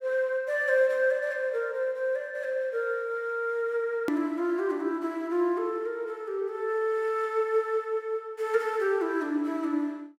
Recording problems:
click at an edit; at 4 s

